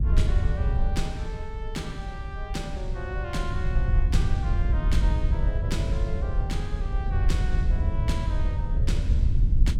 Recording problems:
wind noise; below 78 Hz, SNR -8 dB

